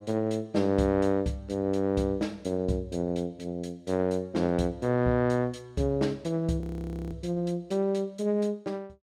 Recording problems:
frozen audio; at 6.5 s for 0.5 s

